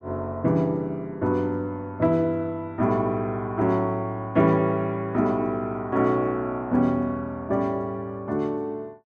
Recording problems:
none

